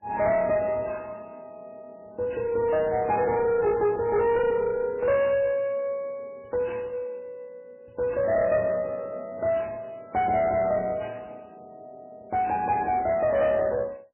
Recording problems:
lossy compression; MP3, log-spectral distance 2 dB, nothing above 2.6 kHz
distorted audio; soft clipping, signal-to-distortion ratio 11 dB

